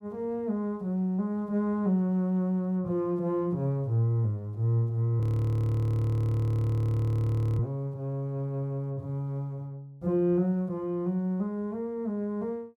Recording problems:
audio freezing; at 5 s for 2.5 s

